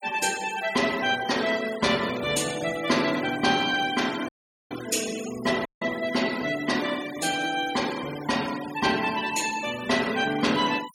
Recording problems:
noise reduction artefacts; signal-to-artefact ratio 13 dB
dropout; at 4.5 s and at 5.5 s

